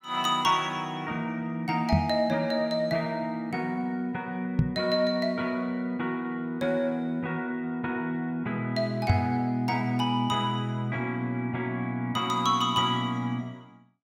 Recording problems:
microphone thump; at 2 s, at 4.5 s and at 9 s; peak +9 dB vs average level

